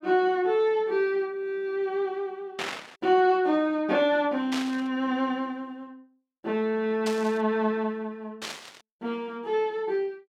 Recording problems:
static burst; 4 times, first at 2.5 s; peak -2 dB vs average level

